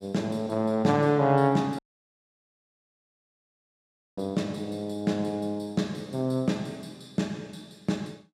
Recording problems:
dropout; at 2 s for 2.5 s

